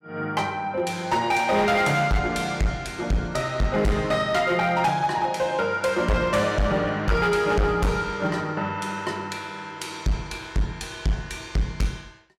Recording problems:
distorted audio; hard clipping, signal-to-distortion ratio 8 dB

